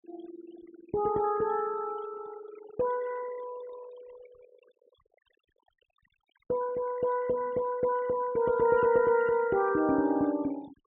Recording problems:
treble cut off; nothing above 4 kHz
noise reduction artefacts; signal-to-artefact ratio 22 dB

